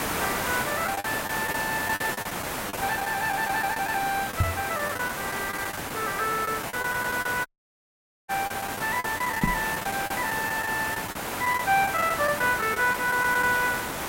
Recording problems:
hiss; SNR 3 dB
lost packets; 9% of the sound replaced, filled with the last packet
knock on the microphone; at 4.5 s and at 9.5 s; peak +7 dB vs average level
dropout; at 7.5 s for 1 s

